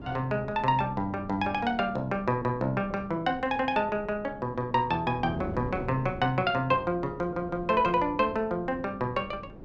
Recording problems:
wind on the microphone; below 380 Hz, SNR 15 dB

